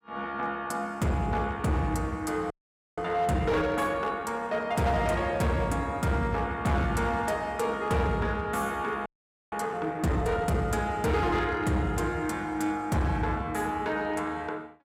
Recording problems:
distorted audio; hard clipping, signal-to-distortion ratio 12 dB
frozen audio; at 2.5 s and at 9 s

